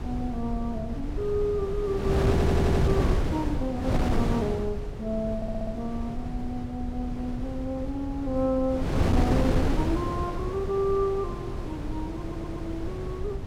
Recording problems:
low-frequency rumble; below 86 Hz, SNR 10 dB
wind on the microphone; below 350 Hz, SNR 0 dB
stutter; at 2.5 s, at 5.5 s and at 12 s

